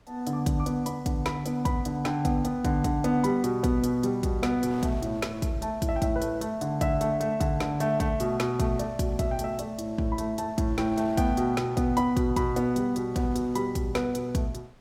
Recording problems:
wind on the microphone; below 1.1 kHz, SNR 26 dB

